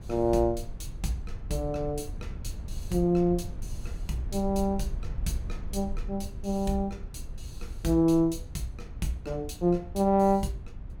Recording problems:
rumble; below 78 Hz, SNR 12 dB

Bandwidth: 17.5 kHz